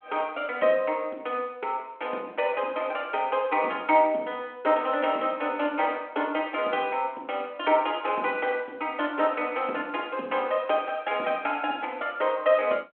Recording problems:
telephone audio; 220 Hz to 3.3 kHz, G.726

